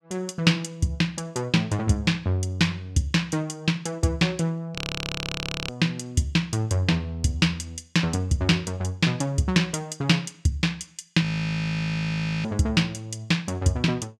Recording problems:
frozen audio; at 5 s for 1 s and at 11 s for 1 s

